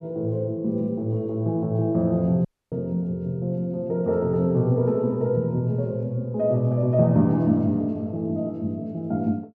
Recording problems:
dropout; at 2.5 s

